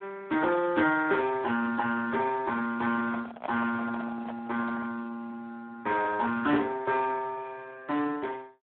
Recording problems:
phone line; 240 Hz to 2.7 kHz, Speex
handling noise; from 3 to 5 s; peak -1 dB vs average level

